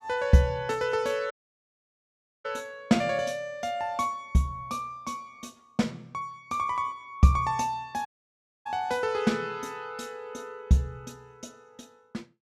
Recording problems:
audio cutting out; at 1.5 s for 1 s and at 8 s for 0.5 s

